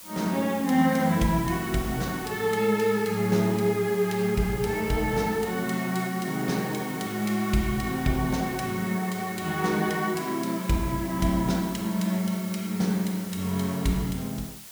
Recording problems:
background hiss; slope 0 dB per octave, SNR 14 dB

